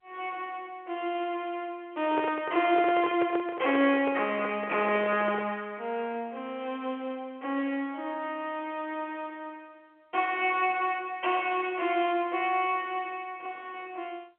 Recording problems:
telephone audio; 220 Hz to 3.4 kHz, G.711
handling noise; from 2 to 5.5 s; peak 0 dB vs average level

